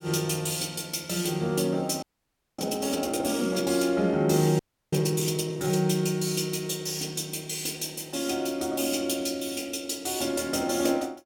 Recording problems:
frozen audio; at 2 s for 0.5 s and at 4.5 s

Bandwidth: 17.5 kHz